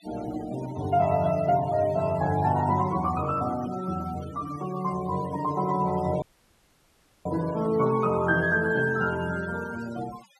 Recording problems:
denoising artefacts; signal-to-artefact ratio 17 dB
dropout; at 6 s for 1 s

